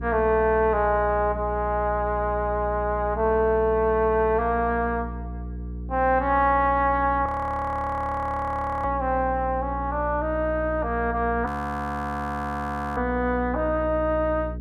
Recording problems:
electrical hum; 60 Hz, harmonics up to 480 Hz, SNR 10 dB
frozen audio; at 7.5 s for 1.5 s and at 11 s for 1.5 s

